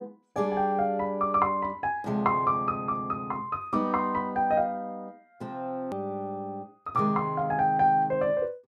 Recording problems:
edit click; at 6 s

